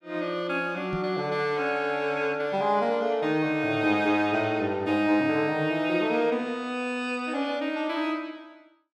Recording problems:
microphone thump; at 1 s; peak -3 dB vs average level

